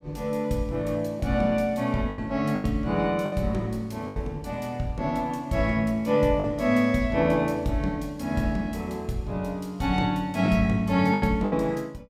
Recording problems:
lost packets; 4% of the sound replaced, filled with the last packet

